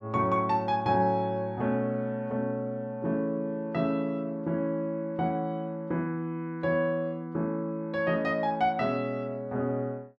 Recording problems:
none

